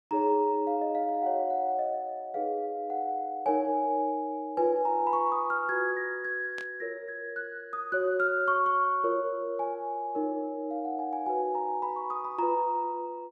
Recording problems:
burst of static; at 6.5 s; peak -11 dB vs average level

